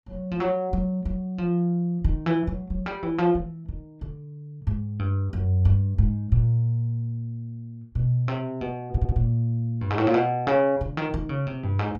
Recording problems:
audio stuttering; at 9 s

